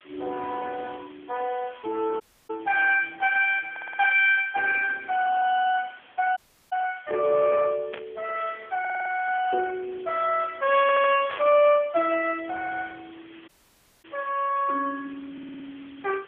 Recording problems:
telephone audio; 300 Hz to 3.3 kHz, AMR-NB
background hiss; SNR 27 dB
audio cutting out; at 2 s, at 6.5 s and at 13 s for 0.5 s
stutter; 4 times, first at 3.5 s
static burst; at 8 s and at 11 s; peak -7 dB vs average level

